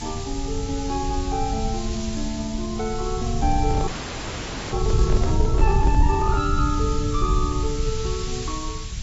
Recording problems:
codec artefacts; AAC, log-spectral distance 10 dB, nothing above 7.3 kHz
hiss; slope +2 dB per octave, SNR 8 dB
rumble; below 86 Hz, SNR -1 dB
microphone handling noise; from 3.5 to 6.5 s; peak -1 dB vs average level
audio freezing; at 4 s for 1 s

